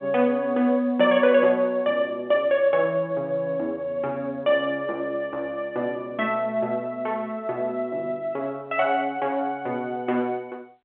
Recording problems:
telephone audio; 280 Hz to 3.5 kHz, G.711

